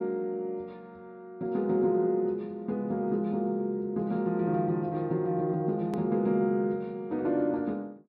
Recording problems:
treble missing; nothing above 5.5 kHz
hard cut with a click; at 6 s

